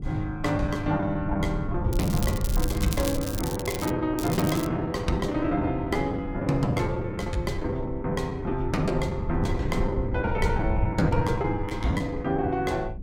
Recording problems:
rumble; below 120 Hz, SNR 6 dB
packet loss; 13% of the sound replaced, filled with the last packet
crackle; from 2 to 4 s and at 4 s; loose cable, SNR 9 dB

